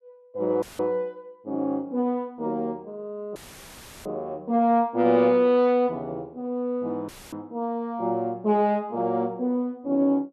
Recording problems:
audio cutting out; at 0.5 s, at 3.5 s for 0.5 s and at 7 s; filled with static

